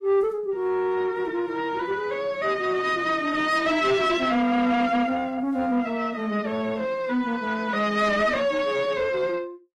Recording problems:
codec artefacts; AAC, log-spectral distance 2 dB, nothing above 12.3 kHz
distorted audio; soft clipping, signal-to-distortion ratio 11 dB

